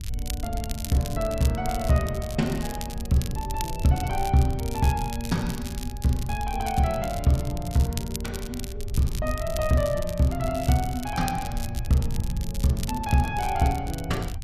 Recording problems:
wind noise; below 86 Hz, SNR 8 dB
crackle; vinyl, SNR 13 dB

